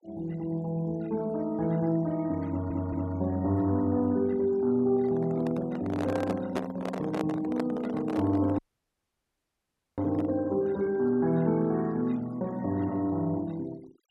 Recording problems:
denoising artefacts; signal-to-artefact ratio 23 dB
audio stuttering; at 2.5 s
microphone handling noise; from 5 to 10 s; peak +1 dB vs average level
audio cutting out; at 8.5 s for 1.5 s

